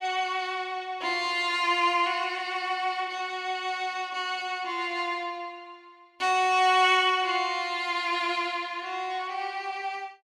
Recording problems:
none

